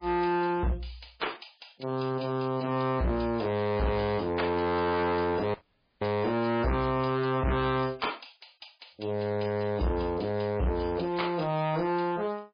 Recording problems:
lossy codec; MP3, log-spectral distance 7 dB
distortion; hard clipping, signal-to-distortion ratio 8 dB
dropout; at 5.5 s

